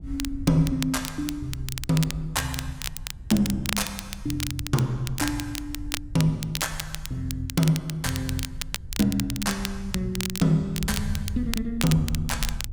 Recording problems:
wind on the microphone; below 76 Hz, SNR 13 dB
crackling; vinyl, SNR 7 dB

